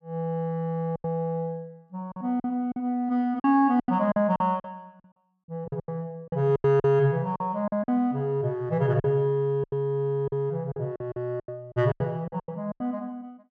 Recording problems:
packet loss; 12% of the sound replaced, filled with silence

